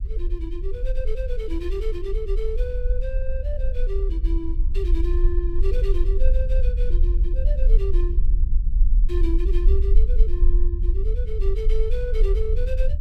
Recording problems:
rumble; below 46 Hz, strongest tone 22 Hz, SNR -8 dB

